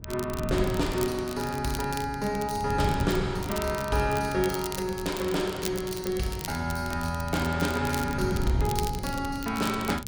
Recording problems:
wind on the microphone; below 180 Hz, SNR 8 dB
crackling; vinyl, SNR 11 dB

